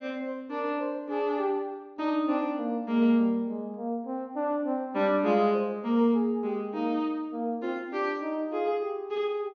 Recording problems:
low-pass filter; nothing above 6.7 kHz

